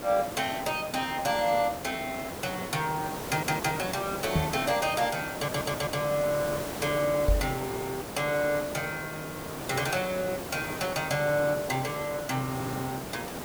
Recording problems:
background hiss; slope -6 dB per octave, SNR 7 dB
audio stuttering; 4 times, first at 3.5 s
microphone thump; at 4.5 s and at 7.5 s; peak +7 dB vs average level

